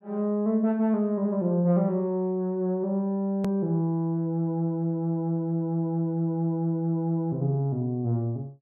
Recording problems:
edit click; at 3.5 s

